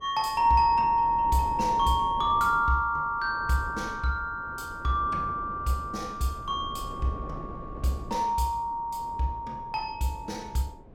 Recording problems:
wind noise; below 400 Hz, SNR 16 dB

